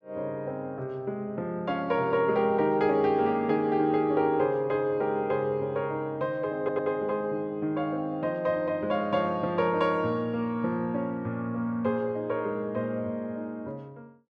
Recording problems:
stutter; at 6.5 s

